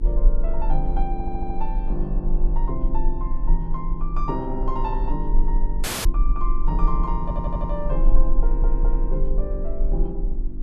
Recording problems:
hum; 50 Hz, harmonics up to 350 Hz, SNR 8 dB
rumble; below 36 Hz, strongest tone 24 Hz, SNR -5 dB
wind on the microphone; below 210 Hz, SNR 16 dB
audio stuttering; at 1 s, at 7 s and at 8.5 s
audio cutting out; at 6 s

